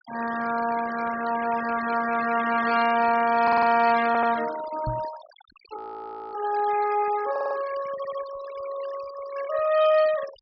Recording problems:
treble missing; nothing above 5.5 kHz
noise reduction artefacts; signal-to-artefact ratio 15 dB
stutter; 4 times, first at 3.5 s
microphone bump; at 5 s; peak -4 dB vs average level
audio freezing; at 6 s for 0.5 s

